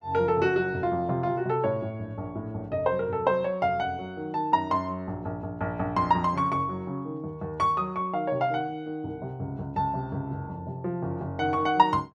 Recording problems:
none

